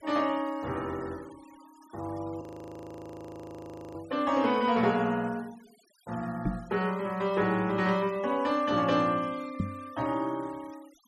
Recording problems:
denoising artefacts; signal-to-artefact ratio 24 dB
audio freezing; at 2.5 s for 1.5 s
microphone bump; at 6.5 s and at 9.5 s; peak +3 dB vs average level

